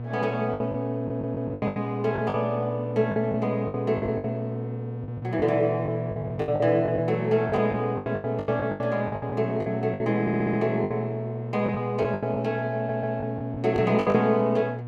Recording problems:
hum; 60 Hz, harmonics up to 720 Hz, SNR 8 dB
lost packets; 14% of the sound replaced, filled with the last packet
audio stuttering; at 1 s, at 10 s and at 13 s

